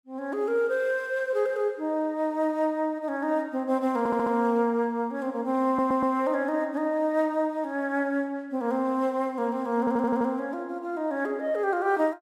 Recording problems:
audio stuttering; at 4 s, at 5.5 s and at 10 s

